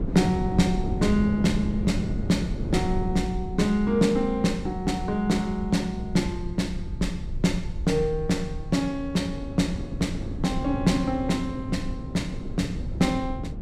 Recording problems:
rumble; below 80 Hz, SNR 11 dB
wind noise; below 240 Hz, SNR 8 dB

